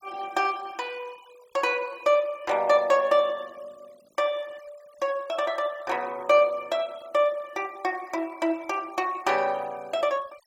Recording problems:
noise reduction artefacts; signal-to-artefact ratio 26 dB

